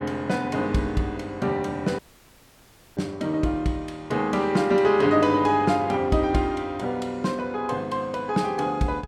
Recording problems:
audio cutting out; at 2 s for 1 s

